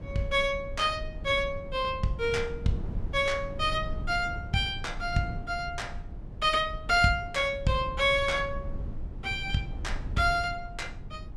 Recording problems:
low-frequency rumble; below 100 Hz, SNR 11 dB

